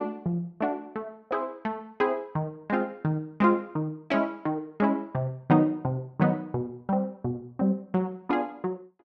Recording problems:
none

